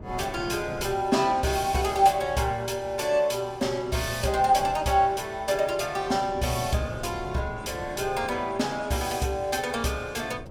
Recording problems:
wind noise; below 390 Hz, SNR 17 dB

